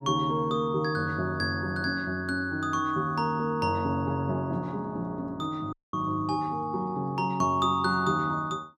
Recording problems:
audio cutting out; at 5.5 s

